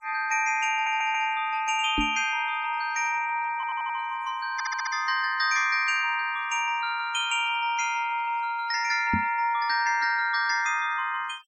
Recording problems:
noise reduction artefacts; signal-to-artefact ratio 25 dB
audio stuttering; at 0.5 s, at 3.5 s and at 4.5 s
microphone bump; at 2 s and at 9 s; peak +1 dB vs average level

